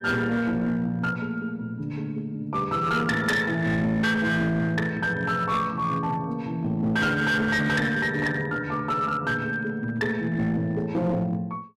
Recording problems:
distorted audio; hard clipping, uneven, signal-to-distortion ratio 11 dB

